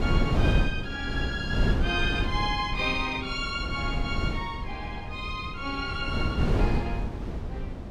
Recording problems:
wind noise; below 220 Hz, SNR 0 dB

